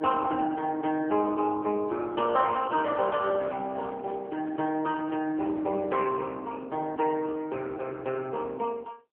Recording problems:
telephone audio; 260 Hz to 3.2 kHz, AMR-NB
microphone handling noise; from 2 to 6 s; peak -13 dB vs average level

